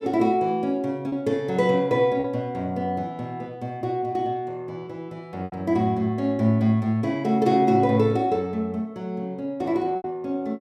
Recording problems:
lost packets; 2% of the sound replaced, filled with repeated pitch periods

